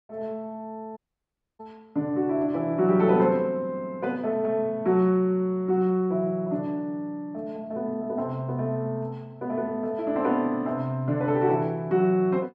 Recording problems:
dropout; at 1 s for 0.5 s

